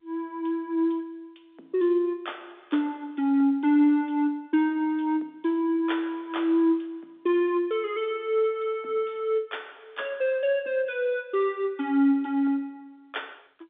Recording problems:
telephone audio; 220 Hz to 3.6 kHz, G.711

